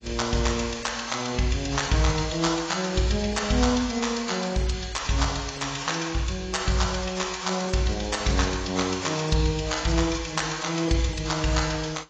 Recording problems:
lossy compression; AAC, log-spectral distance 9 dB, nothing above 7.3 kHz

